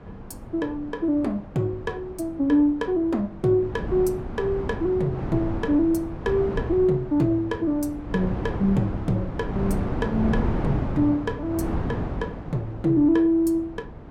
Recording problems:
wind noise; below 350 Hz, SNR 8 dB

